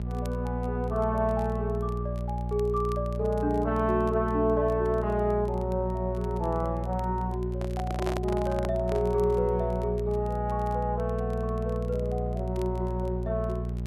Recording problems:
mains hum; 60 Hz, harmonics up to 600 Hz, SNR 3 dB
crackling; vinyl, SNR 28 dB
handling noise; from 7.5 to 9 s; peak -1 dB vs average level

